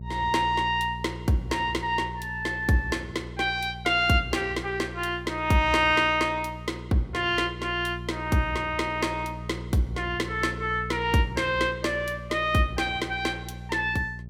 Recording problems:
hum; 60 Hz, harmonics up to 420 Hz, SNR 13 dB

